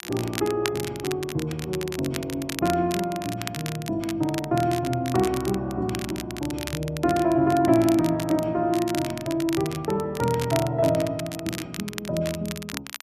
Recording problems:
crackle; vinyl, SNR 11 dB

